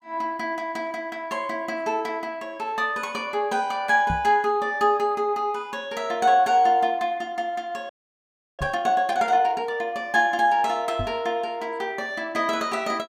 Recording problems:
microphone bump; at 4 s, at 8.5 s and at 11 s; peak -2 dB vs average level
audio freezing; at 8 s for 0.5 s

